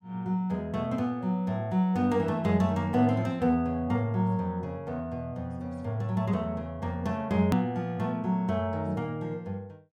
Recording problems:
hard cut with a click; at 7.5 s

